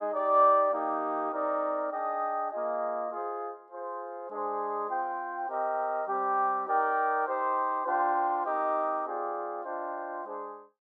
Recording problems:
none

